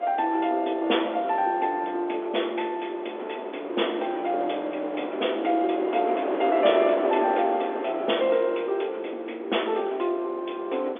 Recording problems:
telephone audio; 260 Hz to 3.5 kHz, G.711
wind on the microphone; below 810 Hz, SNR 9 dB

